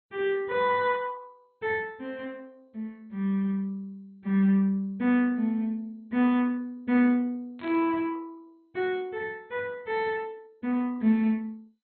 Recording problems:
lossy compression; MP2, log-spectral distance 2 dB, nothing above 3.6 kHz
static burst; at 7.5 s; peak -15 dB vs average level

